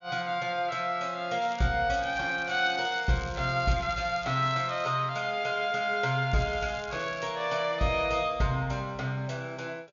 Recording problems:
treble cut off; nothing above 7 kHz
crackling; at 1.5 s, from 2 to 5 s and at 6.5 s; loose cable, SNR 21 dB

